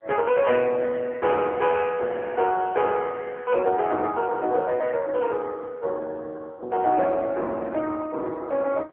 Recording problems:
phone line; 320 Hz to 2.5 kHz, AMR-NB

